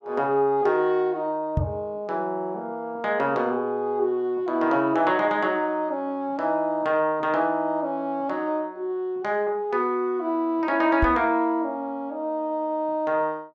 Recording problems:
knock on the microphone; at 1.5 s and at 11 s; peak +4 dB vs average level

